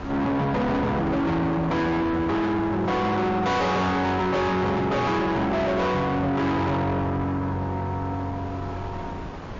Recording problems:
lossy compression; MP3, log-spectral distance 2 dB, nothing above 6.7 kHz
distorted audio; soft clipping, signal-to-distortion ratio 5 dB
wind noise; below 1.1 kHz, SNR 14 dB

